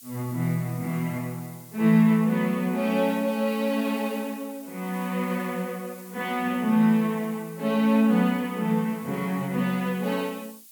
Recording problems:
background hiss; SNR 21 dB

